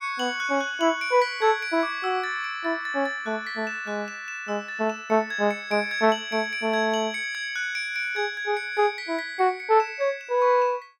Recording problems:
none

